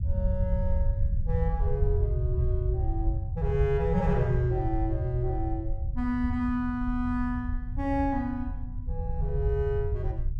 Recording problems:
rumble; below 86 Hz, SNR 0 dB

